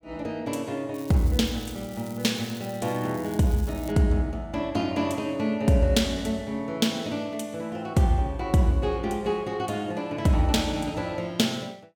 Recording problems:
crackle; from 1 to 4 s; loose cable, SNR 20 dB

